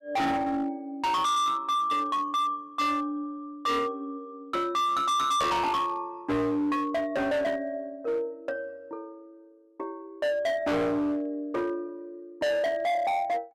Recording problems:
distorted audio; hard clipping, signal-to-distortion ratio 6 dB

